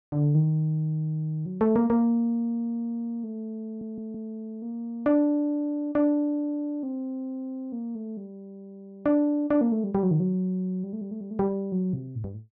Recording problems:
audio stuttering; at 3.5 s

